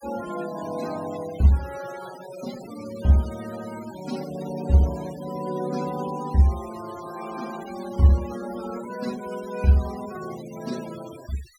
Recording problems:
denoising artefacts; signal-to-artefact ratio 17 dB

